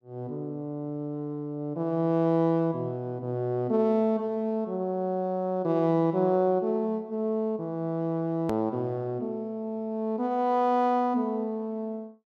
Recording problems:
hard cut with a click; at 8.5 s

